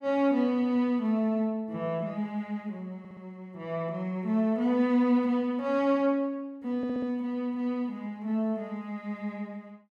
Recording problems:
audio stuttering; at 3 s and at 7 s

